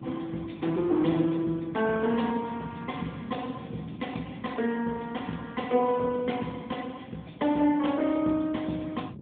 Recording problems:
phone line; 130 Hz to 3.6 kHz, AMR-NB
wind noise; below 280 Hz, SNR 16 dB

